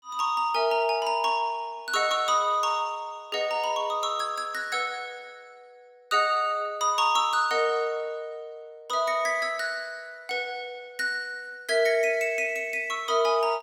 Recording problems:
none

